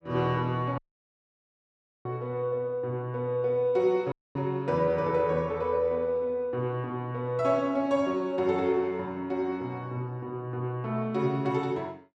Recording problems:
audio cutting out; at 1 s for 1.5 s and at 4 s

